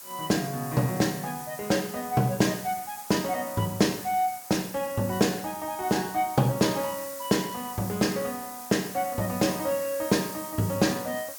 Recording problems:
background hiss; SNR 11 dB

